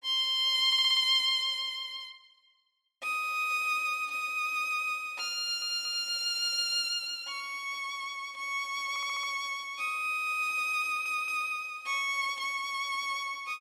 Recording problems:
stutter; 4 times, first at 0.5 s

